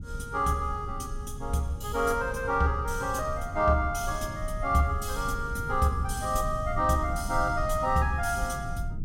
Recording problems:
rumble; below 110 Hz, SNR 9 dB

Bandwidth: 16 kHz